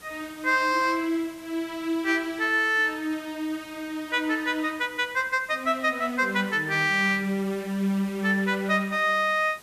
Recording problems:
hiss; slope -2 dB per octave, SNR 23 dB

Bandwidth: 14.5 kHz